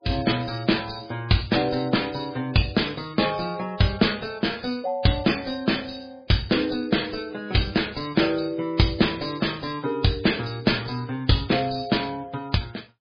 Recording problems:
codec artefacts; MP3, log-spectral distance 8 dB, nothing above 5 kHz
distortion; soft clipping, signal-to-distortion ratio 10 dB

